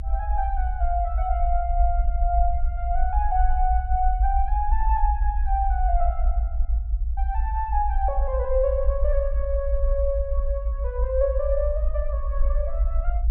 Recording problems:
low-frequency rumble; below 56 Hz, SNR -2 dB

